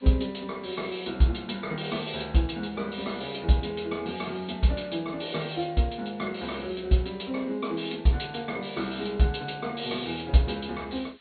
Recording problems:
treble cut off; nothing above 4.4 kHz
hiss; SNR 28 dB

